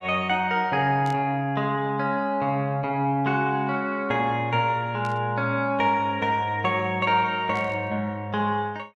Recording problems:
burst of static; at 1 s, at 5 s and at 7.5 s; peak -14 dB vs average level

